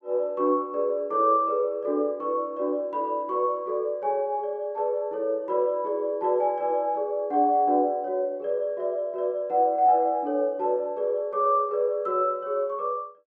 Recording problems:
none

